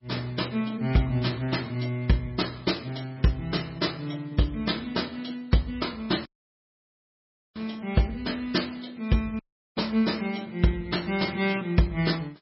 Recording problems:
lossy codec; MP3, log-spectral distance 4 dB, nothing above 5.5 kHz
audio cutting out; at 6.5 s for 1.5 s and at 9.5 s

